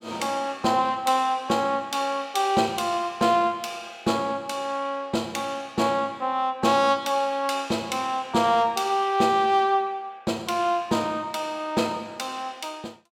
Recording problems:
none

